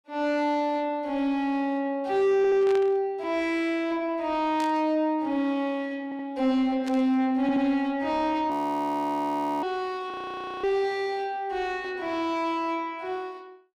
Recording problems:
distortion; soft clipping, signal-to-distortion ratio 10 dB
stutter; at 2.5 s, at 6 s and at 7.5 s
burst of static; 4 times, first at 2.5 s; peak -9 dB vs average level
audio freezing; at 8.5 s for 1 s and at 10 s for 0.5 s

